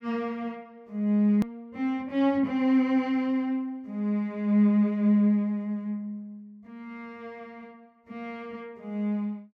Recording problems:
click at an edit; at 1.5 s

